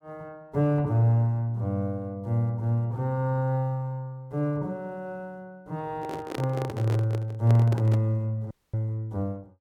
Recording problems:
handling noise; from 6 to 8 s; peak -3 dB vs average level
audio cutting out; at 8.5 s

